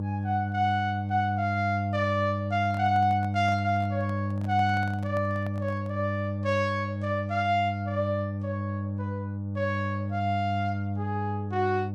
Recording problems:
hum; 50 Hz, harmonics up to 600 Hz, SNR 3 dB
handling noise; from 2.5 to 6 s; peak -9 dB vs average level

